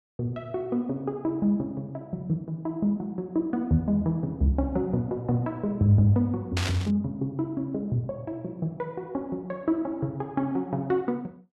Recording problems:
burst of static; at 6.5 s; peak +1 dB vs average level

